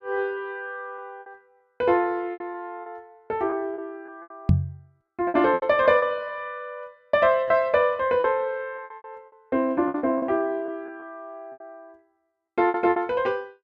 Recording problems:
packet loss; 12% of the sound replaced, filled with repeated pitch periods
microphone bump; at 4.5 s; peak +8 dB vs average level

